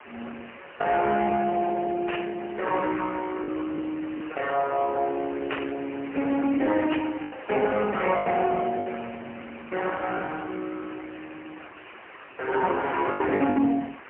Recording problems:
telephone audio; 240 Hz to 3.2 kHz, AMR-NB, then MP3
hiss; SNR 17 dB
packet loss; 4% of the sound replaced, filled with the last packet
burst of static; at 2 s, at 5.5 s and at 7 s; peak 0 dB vs average level

